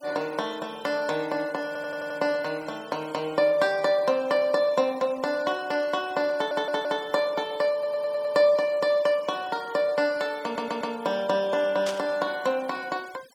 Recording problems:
noise reduction artefacts; signal-to-artefact ratio 23 dB
stutter; 4 times, first at 1.5 s
burst of static; at 12 s; peak -5 dB vs average level

